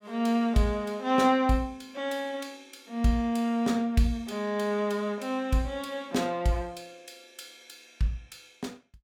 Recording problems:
none

